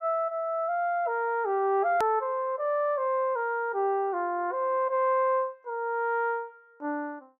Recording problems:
hard cut with a click; at 2 s

